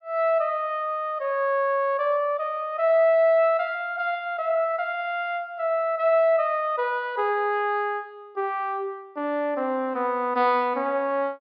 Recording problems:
treble cut off; nothing above 5.5 kHz

